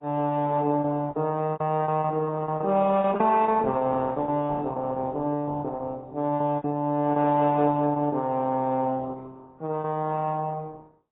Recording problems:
codec artefacts; Opus, then AAC, log-spectral distance 2 dB, nothing above 3.4 kHz
lost packets; 10% of the sound replaced, filled with repeated pitch periods

